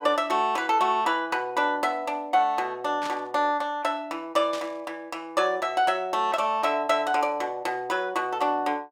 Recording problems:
static burst; at 3 s and at 4.5 s; peak -7 dB vs average level

